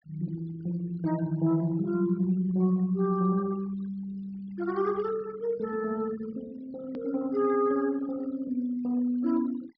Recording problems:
treble missing; nothing above 5.5 kHz
noise reduction artefacts; signal-to-artefact ratio 22 dB
hard cut with a click; at 7 s

